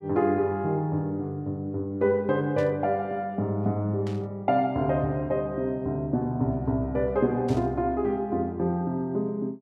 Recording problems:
burst of static; at 2.5 s, at 4 s and at 7.5 s; peak -14 dB vs average level

